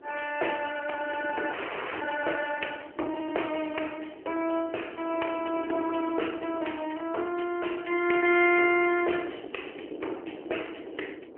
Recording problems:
telephone audio; 280 Hz to 3 kHz, AMR-NB
wind on the microphone; below 490 Hz, SNR 14 dB
frozen audio; at 1.5 s

